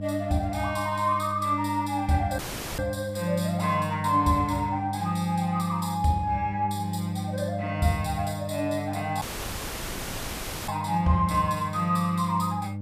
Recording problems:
hum; 50 Hz, harmonics up to 600 Hz, SNR 8 dB
audio cutting out; at 2.5 s and at 9 s for 1.5 s

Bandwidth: 14.5 kHz